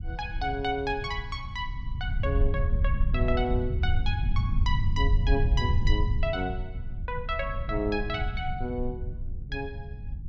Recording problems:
low-frequency rumble; below 88 Hz, SNR -2 dB

